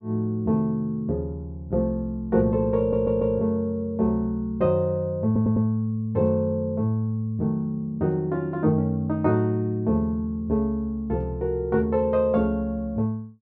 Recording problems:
audio stuttering; at 3 s and at 5.5 s

